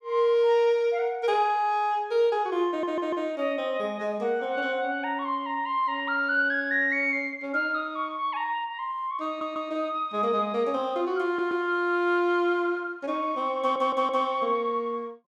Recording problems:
stutter; 4 times, first at 2.5 s

